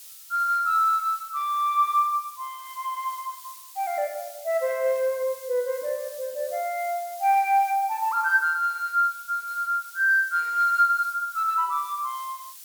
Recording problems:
hiss; slope +5 dB per octave, SNR 18 dB

